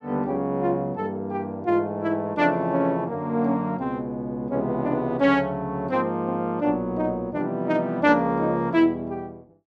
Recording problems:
none

